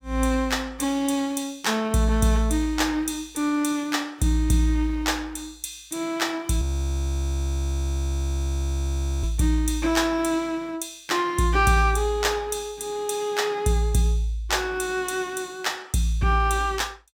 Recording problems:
frozen audio; at 6.5 s for 2.5 s

